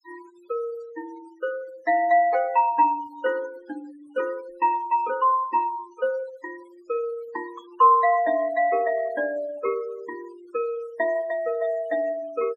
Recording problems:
denoising artefacts; signal-to-artefact ratio 23 dB

